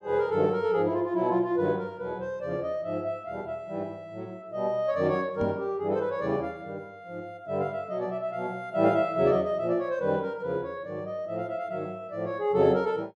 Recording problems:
microphone thump; at 5.5 s; peak 0 dB vs average level

